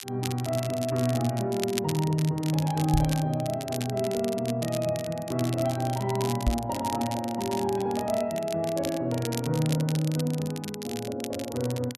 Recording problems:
crackling; vinyl, SNR 11 dB
knock on the microphone; at 3 s and at 6.5 s; peak +5 dB vs average level

